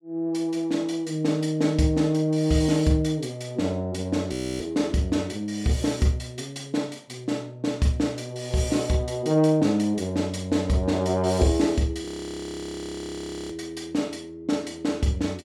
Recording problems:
frozen audio; at 4.5 s and at 12 s for 1.5 s

